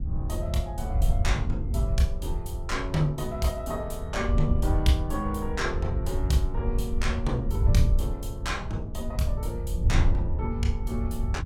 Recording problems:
wind on the microphone; below 84 Hz, SNR -1 dB

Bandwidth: 17 kHz